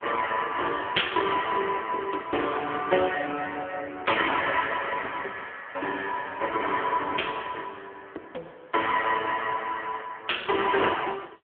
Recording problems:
telephone audio; 300 Hz to 3.4 kHz, AMR-NB

